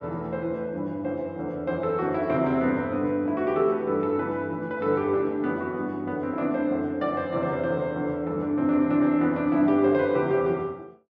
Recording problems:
none

